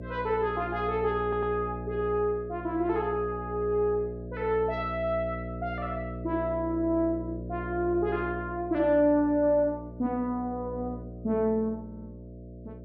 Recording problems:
electrical hum; 60 Hz, harmonics up to 660 Hz, SNR 10 dB
audio stuttering; at 1 s and at 12 s

